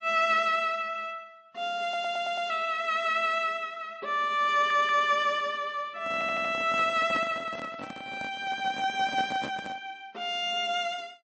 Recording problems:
lossy codec; MP3, log-spectral distance 2 dB, nothing above 7.1 kHz
stutter; at 2 s, at 4.5 s and at 6 s
handling noise; from 6 to 10 s; peak -5 dB vs average level

